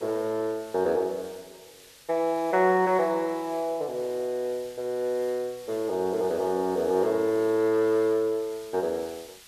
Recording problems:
background hiss; slope +2 dB per octave, SNR 22 dB

